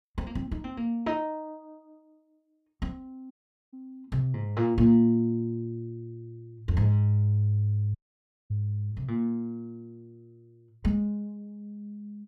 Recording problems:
audio cutting out; at 3.5 s and at 8 s for 0.5 s

